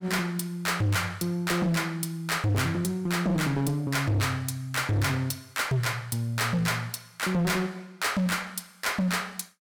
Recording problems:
distorted audio; hard clipping, signal-to-distortion ratio 7 dB

